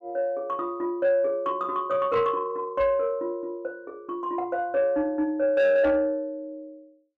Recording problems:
distorted audio; soft clipping, signal-to-distortion ratio 12 dB

